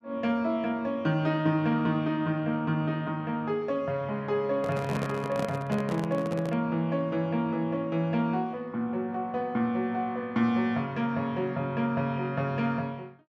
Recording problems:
microphone handling noise; from 4.5 to 6.5 s; peak -1 dB vs average level

